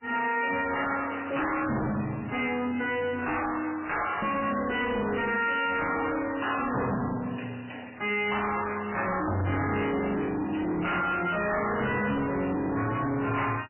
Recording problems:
lossy codec; MP3, log-spectral distance 9 dB, nothing above 3 kHz
distortion; soft clipping, signal-to-distortion ratio 6 dB

